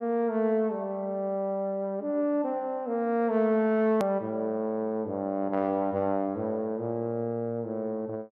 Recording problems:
click at an edit; at 4 s

